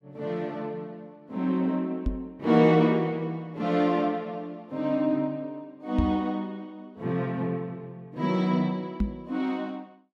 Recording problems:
microphone thump; at 2 s, at 6 s and at 9 s; peak +4 dB vs average level

